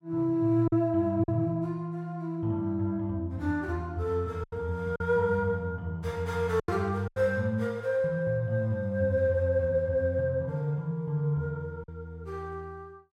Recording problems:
packet loss; 3% of the sound replaced, filled with silence

